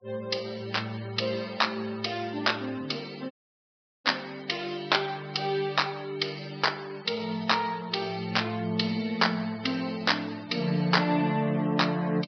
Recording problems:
treble missing; nothing above 5.5 kHz
noise reduction artefacts; signal-to-artefact ratio 20 dB
audio cutting out; at 3.5 s for 0.5 s

